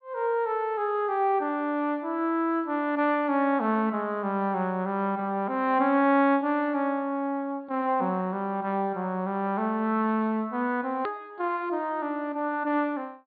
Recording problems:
treble missing; nothing above 4.5 kHz
edit click; at 11 s

